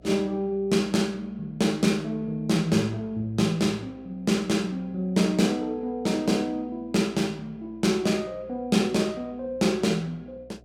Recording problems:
electrical hum; 60 Hz, harmonics up to 720 Hz, SNR 27 dB

